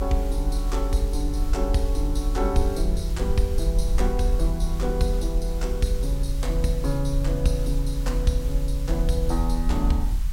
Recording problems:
hiss; slope 0 dB per octave, SNR 17 dB
rumble; below 50 Hz, strongest tone 40 Hz, SNR -1 dB

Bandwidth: 16 kHz